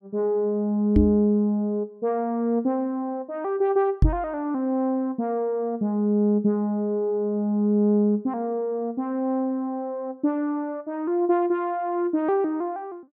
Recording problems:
microphone bump; at 1 s and at 4 s; peak +8 dB vs average level

